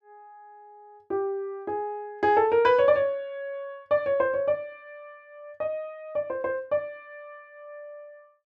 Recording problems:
none

